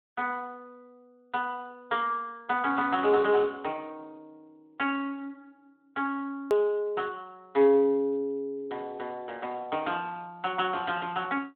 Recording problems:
telephone audio; 220 Hz to 3.5 kHz, Speex
edit click; at 6.5 s

